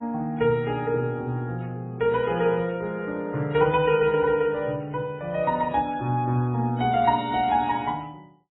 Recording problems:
codec artefacts; MP3, then AAC, log-spectral distance 2 dB, nothing above 3.4 kHz

